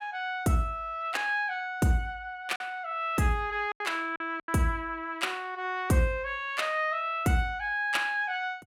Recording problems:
packet loss; 3% of the sound replaced, filled with silence

